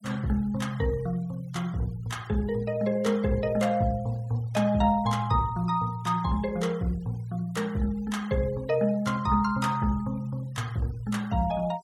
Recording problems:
noise reduction artefacts; signal-to-artefact ratio 26 dB

